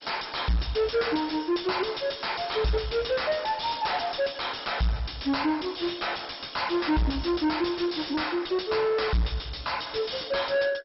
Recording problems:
codec artefacts; MP2, log-spectral distance 11 dB, nothing above 5.5 kHz
distortion; soft clipping, signal-to-distortion ratio 6 dB

